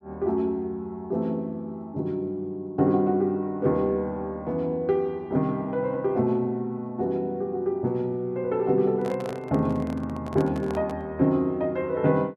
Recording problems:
microphone handling noise; from 9 to 11 s; peak -7 dB vs average level

